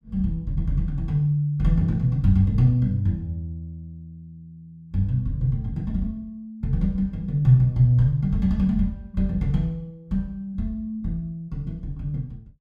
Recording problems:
none

